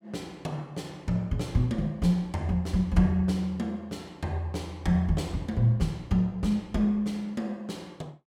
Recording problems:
none

